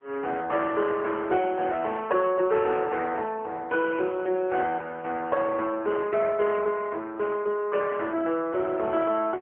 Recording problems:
phone line; 280 Hz to 3.3 kHz, AMR-NB

